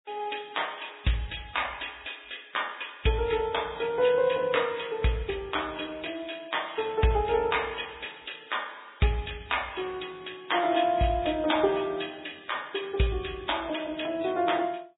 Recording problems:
low-pass filter; nothing above 3.8 kHz
lossy compression; MP3, log-spectral distance 8 dB

